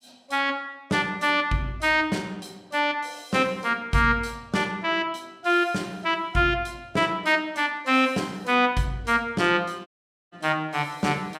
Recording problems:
audio cutting out; at 10 s

